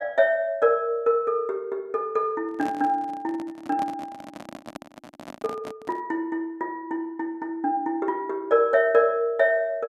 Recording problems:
handling noise; from 2.5 to 6 s; peak -7 dB vs average level

